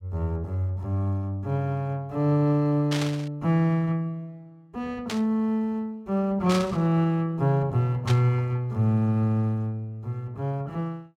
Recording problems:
static burst; 4 times, first at 3 s; peak -2 dB vs average level

